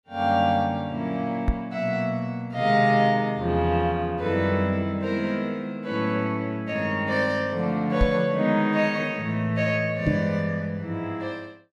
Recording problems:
microphone thump; at 1.5 s, at 8 s and at 10 s; peak +4 dB vs average level

